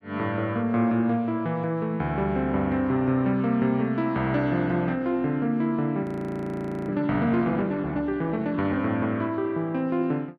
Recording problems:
frozen audio; at 6 s for 1 s

